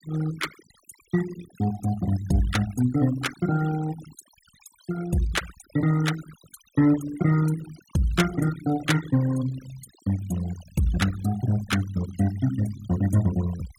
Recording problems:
noise reduction artefacts; signal-to-artefact ratio 16 dB

